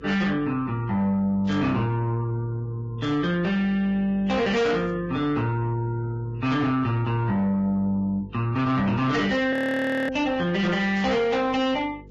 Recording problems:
lossy codec; Vorbis, log-spectral distance 2 dB, nothing above 13.1 kHz
distorted audio; soft clipping, signal-to-distortion ratio 11 dB
mains hum; 50 Hz, harmonics up to 500 Hz, SNR 21 dB
static burst; 4 times, first at 1.5 s; peak -14 dB vs average level
frozen audio; at 9.5 s for 0.5 s

